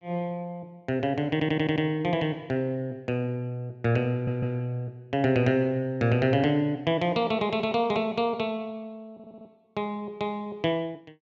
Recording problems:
stutter; at 1.5 s, at 4 s and at 9 s

